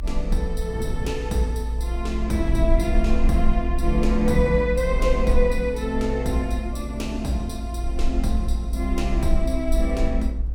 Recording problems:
rumble; below 56 Hz, SNR 2 dB
wind on the microphone; below 230 Hz, SNR 13 dB

